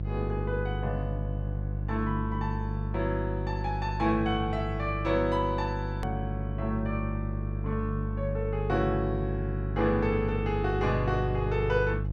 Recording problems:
hum; 50 Hz, harmonics up to 500 Hz, SNR 2 dB
click at an edit; at 6 s

